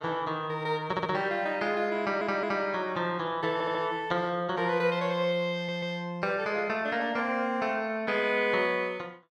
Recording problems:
stutter; 4 times, first at 1 s

